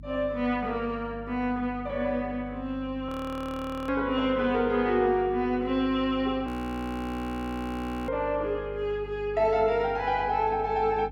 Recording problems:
hum; 50 Hz, harmonics up to 300 Hz, SNR 16 dB
frozen audio; at 3 s for 1 s and at 6.5 s for 1.5 s

